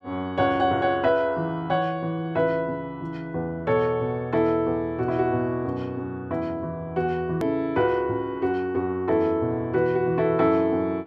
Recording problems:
click at an edit; at 7.5 s

